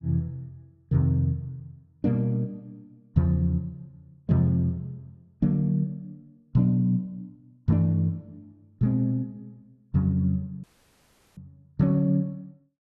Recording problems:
audio cutting out; at 11 s for 0.5 s

